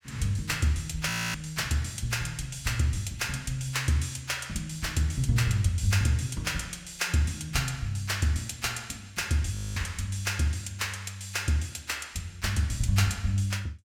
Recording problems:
audio freezing; at 1 s and at 9.5 s

